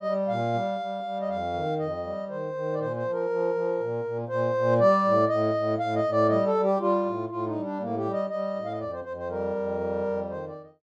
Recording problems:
none

